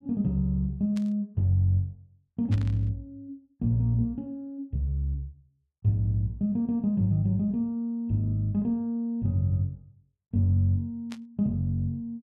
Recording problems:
burst of static; at 1 s, at 2.5 s and at 11 s; peak -12 dB vs average level

